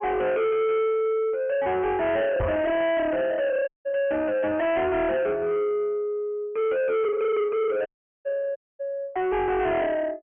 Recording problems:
treble cut off; nothing above 3.1 kHz
distortion; soft clipping, signal-to-distortion ratio 7 dB
microphone thump; at 2.5 s; peak +3 dB vs average level
audio cutting out; at 3.5 s, at 8 s and at 8.5 s

